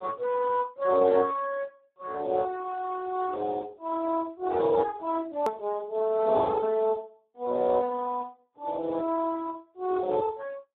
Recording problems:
phone line; 280 Hz to 3.9 kHz, Speex
edit click; at 5.5 s

